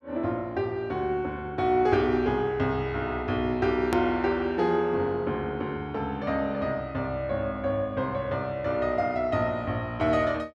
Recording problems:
click at an edit; at 4 s

